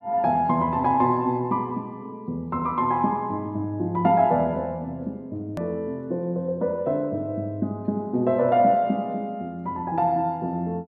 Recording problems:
click at an edit; at 5.5 s

